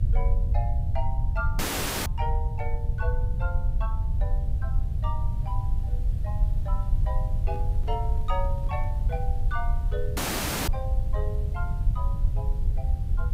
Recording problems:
hum; 60 Hz, harmonics up to 720 Hz, SNR 19 dB
background hiss; SNR 15 dB
rumble; below 76 Hz, SNR -9 dB
audio cutting out; at 1.5 s and at 10 s for 0.5 s
microphone handling noise; from 7.5 to 9 s; peak -7 dB vs average level

